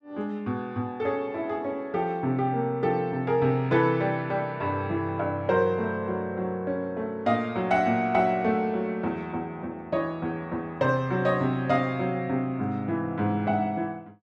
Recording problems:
none

